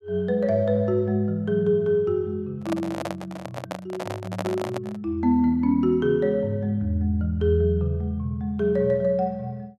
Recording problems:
handling noise; from 2.5 to 5 s; peak -2 dB vs average level

